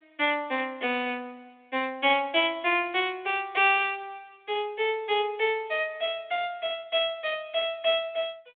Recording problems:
phone line; 280 Hz to 3.6 kHz, G.726

